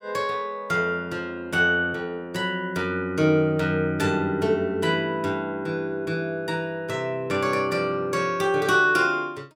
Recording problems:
none

